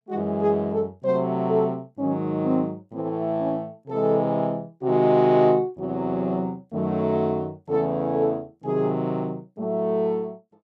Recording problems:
none

